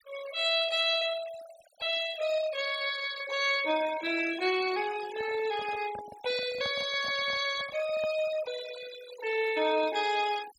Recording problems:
noise reduction artefacts; signal-to-artefact ratio 13 dB
handling noise; from 5 to 8.5 s; peak -11 dB vs average level

